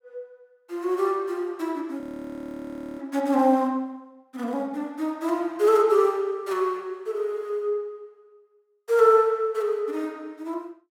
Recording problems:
audio freezing; at 2 s for 1 s

